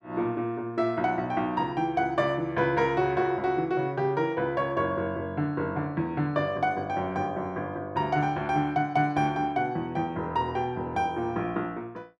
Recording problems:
none

